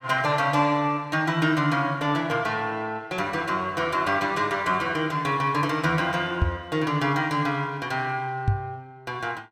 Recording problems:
microphone bump; at 6.5 s and at 8.5 s; peak +6 dB vs average level

